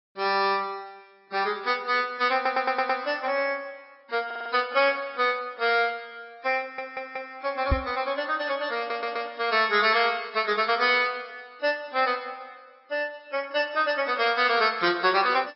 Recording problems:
treble missing; nothing above 5.3 kHz
lossy compression; AAC, log-spectral distance 3 dB
stutter; 4 times, first at 2.5 s
microphone bump; at 7.5 s; peak +4 dB vs average level

